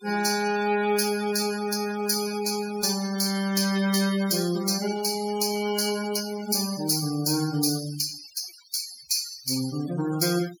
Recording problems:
denoising artefacts; signal-to-artefact ratio 12 dB

